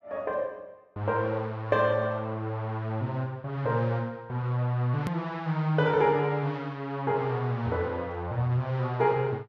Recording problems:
hard cut with a click; at 5 s

